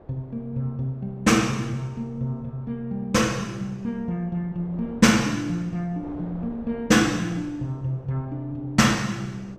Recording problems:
wind noise; below 550 Hz, SNR 22 dB

